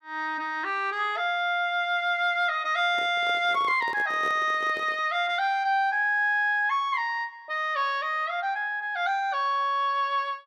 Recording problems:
handling noise; from 3 to 5 s; peak -9 dB vs average level

